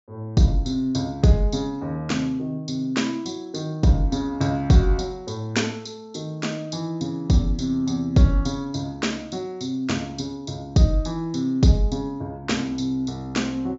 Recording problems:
treble cut off; nothing above 7.6 kHz

